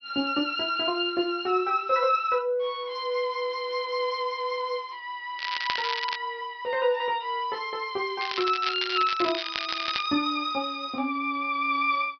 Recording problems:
treble cut off; nothing above 5.5 kHz
crackle; at 5.5 s and from 8 to 10 s; loose cable, SNR 5 dB

